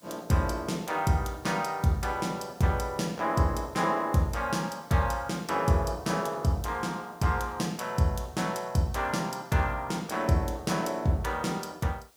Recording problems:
hiss; SNR 28 dB

